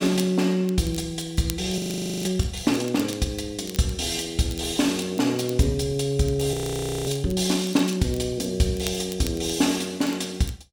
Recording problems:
crackle; vinyl, SNR 18 dB
frozen audio; at 2 s and at 6.5 s for 0.5 s

